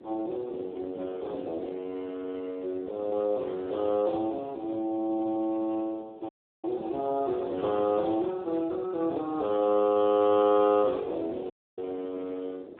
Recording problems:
telephone audio; 300 Hz to 2.1 kHz, Speex
wind noise; below 500 Hz, SNR 22 dB
dropout; at 6.5 s and at 12 s

